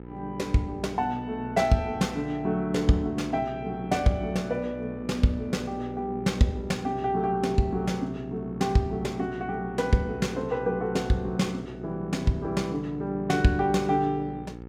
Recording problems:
hum; 60 Hz, harmonics up to 1.3 kHz, SNR 14 dB

